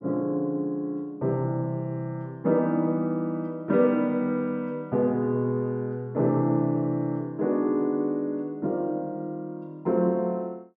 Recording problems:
none

